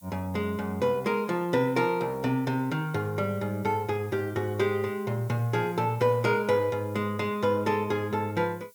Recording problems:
background hiss; SNR 25 dB

